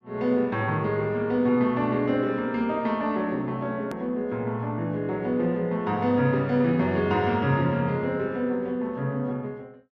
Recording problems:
low-pass filter; nothing above 8 kHz
click at an edit; at 4 s

